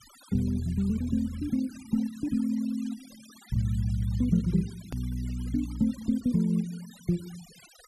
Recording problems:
noise reduction artefacts; signal-to-artefact ratio 22 dB
edit click; at 5 s

